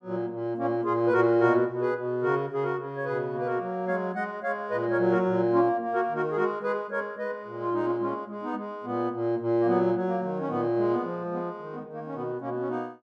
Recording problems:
none

